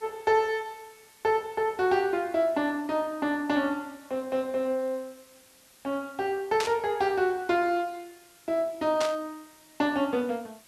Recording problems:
hiss; slope 0 dB per octave, SNR 26 dB
static burst; at 6.5 s and at 9 s; peak 0 dB vs average level

